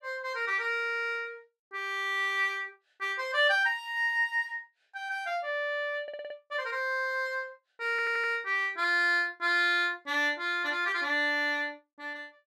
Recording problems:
stutter; at 6 s and at 8 s

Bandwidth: 13 kHz